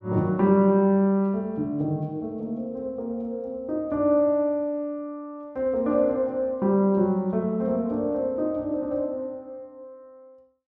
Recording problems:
none

